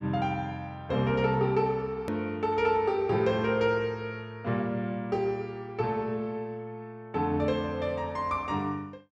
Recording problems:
edit click; at 2 s

